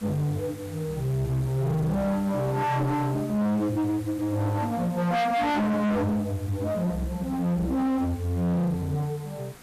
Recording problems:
distortion; hard clipping, uneven, signal-to-distortion ratio 6 dB
hiss; slope -3 dB per octave, SNR 21 dB

